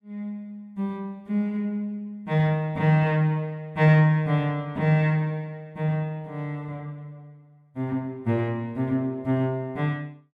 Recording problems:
none

